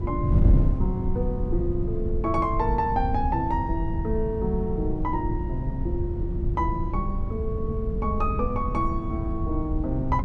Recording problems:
wind on the microphone; below 110 Hz, SNR 0 dB

